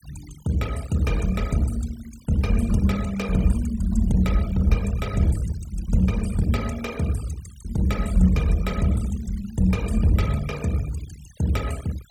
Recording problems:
denoising artefacts; signal-to-artefact ratio 17 dB

